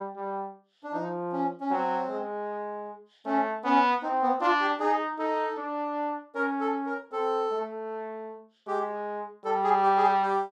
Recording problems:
none

